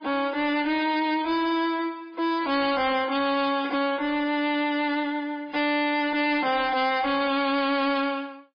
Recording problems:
lossy codec; MP3, log-spectral distance 3 dB, nothing above 5 kHz
distortion; soft clipping, signal-to-distortion ratio 8 dB

